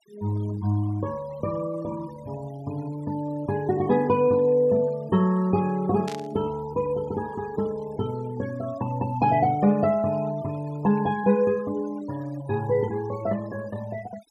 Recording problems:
noise reduction artefacts; signal-to-artefact ratio 20 dB
burst of static; at 6 s; peak -8 dB vs average level

